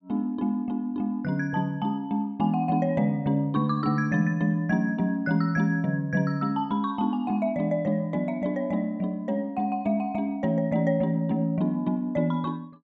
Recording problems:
none

